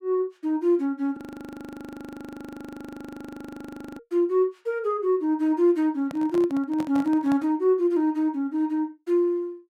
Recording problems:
frozen audio; at 1 s for 3 s
microphone handling noise; from 6 to 7.5 s; peak -8 dB vs average level

